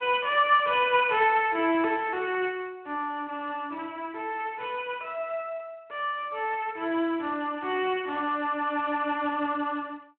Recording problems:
phone line; 300 Hz to 3.2 kHz, Speex

